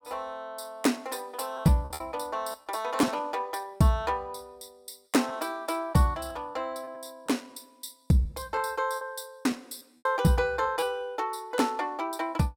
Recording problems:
lost packets; 6% of the sound replaced, filled with repeated pitch periods

